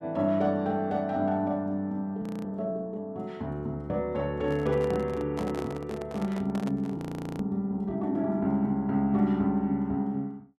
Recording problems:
audio freezing; at 2 s and at 7 s
handling noise; from 4.5 to 7.5 s; peak -5 dB vs average level

